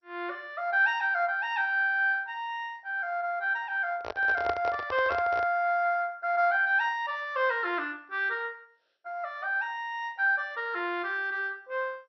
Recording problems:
codec artefacts; MP2, log-spectral distance 2 dB, nothing above 4.9 kHz
handling noise; from 4 to 5.5 s; peak 0 dB vs average level

